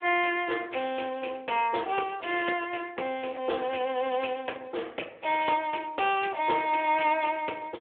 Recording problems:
phone line; 280 Hz to 3.4 kHz, Speex

